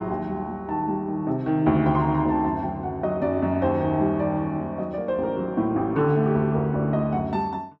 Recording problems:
none

